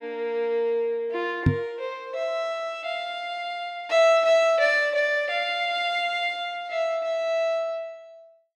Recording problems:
knock on the microphone; at 1.5 s; peak +8 dB vs average level

